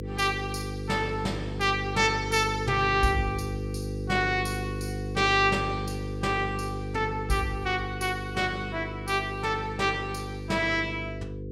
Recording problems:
hum; 50 Hz, harmonics up to 500 Hz, SNR 7 dB

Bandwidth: 17 kHz